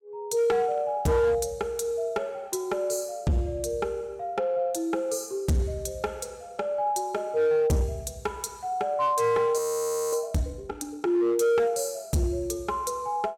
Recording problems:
distorted audio; hard clipping, signal-to-distortion ratio 12 dB
audio freezing; at 9.5 s for 0.5 s

